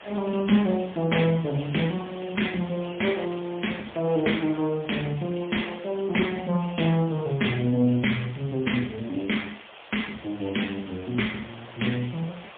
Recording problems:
telephone audio; 170 Hz to 3.4 kHz, AMR-NB, then MP3
hiss; SNR 18 dB

